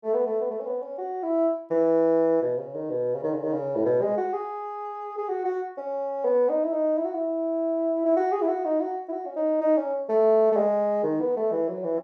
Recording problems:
none

